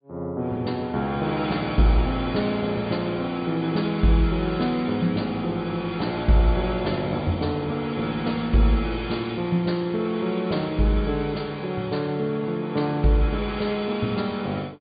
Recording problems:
treble cut off; nothing above 4.7 kHz

